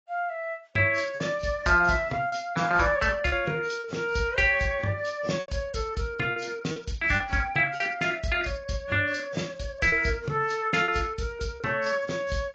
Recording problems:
lossy compression; AAC, log-spectral distance 3 dB
lost packets; 4% of the sound replaced, filled with repeated pitch periods

